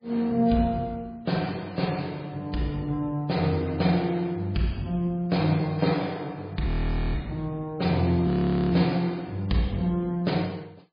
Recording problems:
lossy compression; MP3, log-spectral distance 3 dB, nothing above 4.2 kHz
audio freezing; at 6.5 s and at 8.5 s

